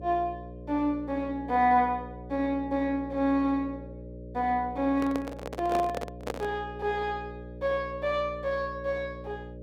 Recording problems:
electrical hum; 60 Hz, harmonics up to 600 Hz, SNR 14 dB
microphone handling noise; from 5 to 6.5 s; peak -1 dB vs average level

